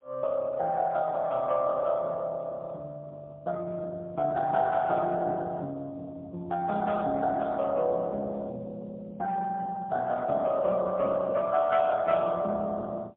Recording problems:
phone line; 190 Hz to 2 kHz, AMR-NB, then MP3

